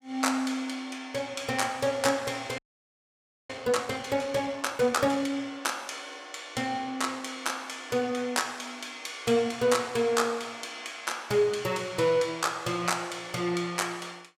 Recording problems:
frozen audio; at 2.5 s for 1 s

